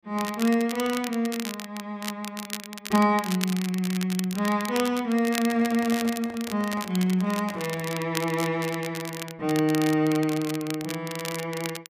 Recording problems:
crackling; vinyl, SNR 10 dB
handling noise; from 5.5 to 8 s; peak -10 dB vs average level

